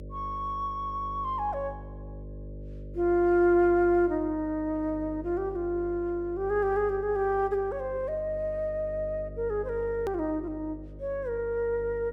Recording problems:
hum; 50 Hz, harmonics up to 600 Hz, SNR 15 dB
click at an edit; at 10 s

